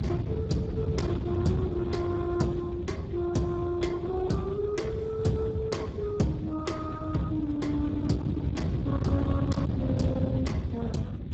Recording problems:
codec artefacts; Speex, log-spectral distance 3 dB, nothing above 7.6 kHz
distorted audio; hard clipping, signal-to-distortion ratio 11 dB
rumble; below 230 Hz, SNR 2 dB

